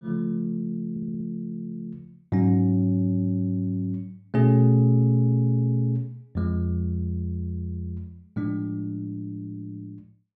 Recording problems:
audio stuttering; at 1 s

